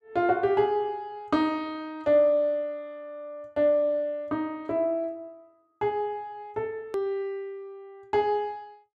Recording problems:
edit click; at 7 s

